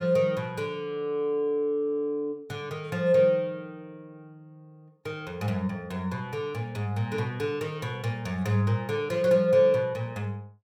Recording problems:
none

